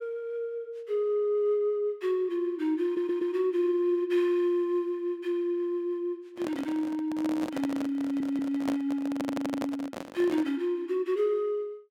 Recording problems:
audio stuttering; at 3 s, at 8 s and at 9 s
handling noise; from 6.5 to 11 s; peak -1 dB vs average level

